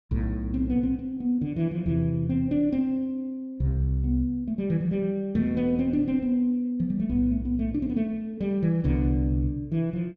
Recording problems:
none

